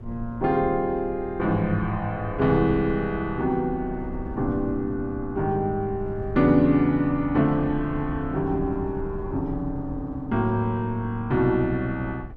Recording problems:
wind on the microphone; below 110 Hz, SNR 15 dB

